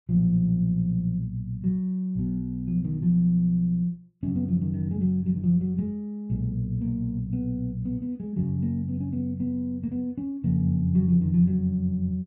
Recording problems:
none

